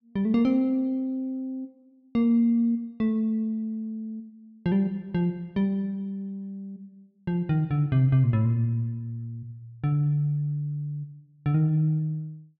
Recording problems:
none

